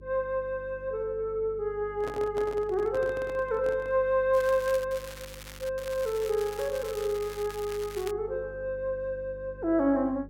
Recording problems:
hum; 50 Hz, harmonics up to 600 Hz, SNR 19 dB
handling noise; from 2 to 4 s; peak -6 dB vs average level
crackle; at 4.5 s, at 5 s and from 6 to 8 s; loose cable, SNR 15 dB

